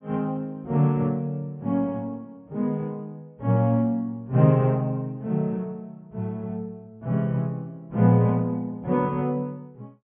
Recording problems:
low-pass filter; nothing above 3.4 kHz

